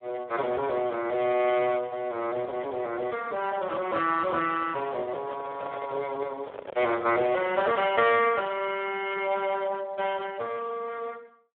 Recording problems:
telephone audio; 280 Hz to 3.5 kHz, Speex
handling noise; from 4.5 to 7.5 s; peak -6 dB vs average level

